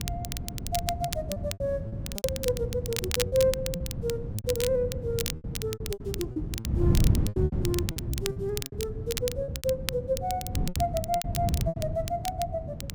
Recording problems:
wind on the microphone; below 170 Hz, SNR 1 dB
crackling; vinyl, SNR 5 dB
lost packets; 12% of the sound replaced, filled with repeated pitch periods

